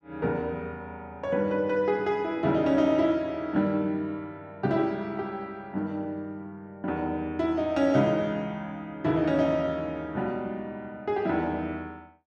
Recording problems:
none

